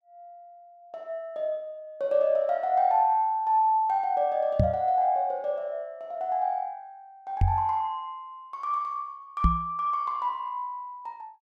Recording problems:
microphone bump; at 4.5 s, at 7.5 s and at 9.5 s; peak +7 dB vs average level

